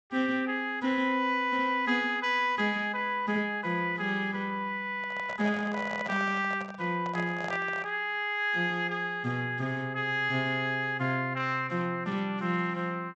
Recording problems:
treble missing; nothing above 8 kHz
microphone handling noise; from 5 to 8 s; peak -5 dB vs average level

